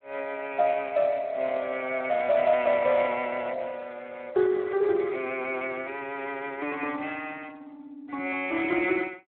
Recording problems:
telephone audio; 340 Hz to 3.5 kHz, Speex

